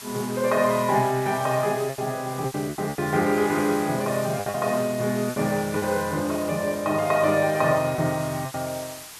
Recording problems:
background hiss; slope +1 dB per octave, SNR 14 dB
packet loss; 7% of the sound replaced, filled with repeated pitch periods

